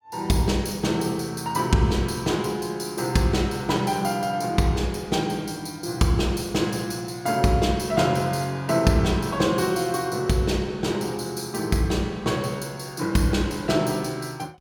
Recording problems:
none

